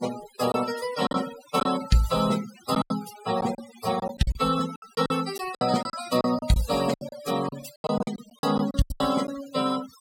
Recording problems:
noise reduction artefacts; signal-to-artefact ratio 12 dB
lost packets; 12% of the sound replaced, filled with silence

